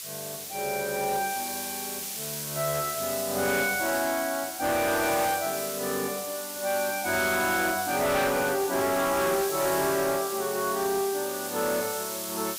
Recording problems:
distorted audio; hard clipping, signal-to-distortion ratio 11 dB
hiss; slope +4 dB per octave, SNR 5 dB

